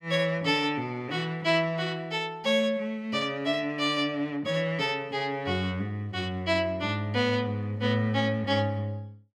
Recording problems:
none

